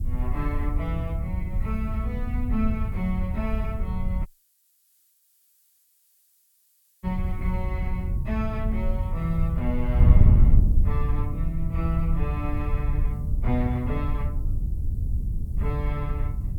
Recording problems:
hiss; slope +4 dB per octave, SNR 28 dB
wind on the microphone; below 88 Hz, SNR -6 dB
dropout; at 4.5 s for 3 s

